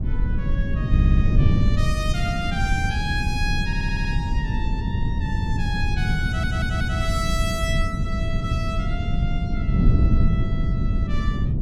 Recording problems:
wind on the microphone; below 140 Hz, SNR -7 dB
audio stuttering; at 1 s, at 3.5 s and at 6.5 s

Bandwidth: 16.5 kHz